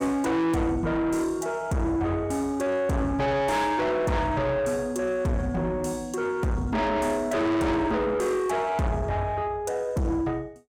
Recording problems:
distorted audio; soft clipping, signal-to-distortion ratio 6 dB

